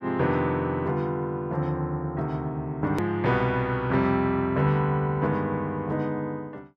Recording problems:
edit click; at 3 s

